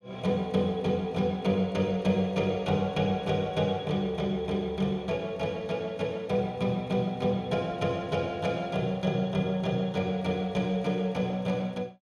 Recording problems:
none

